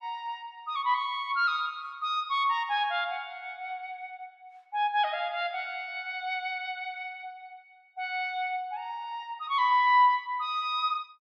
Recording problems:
none

